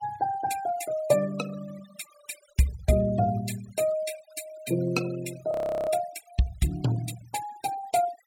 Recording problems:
noise reduction artefacts; signal-to-artefact ratio 15 dB
frozen audio; at 5.5 s

